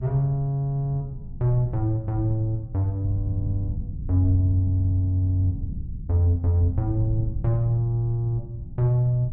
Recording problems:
low-frequency rumble; below 120 Hz, SNR 10 dB

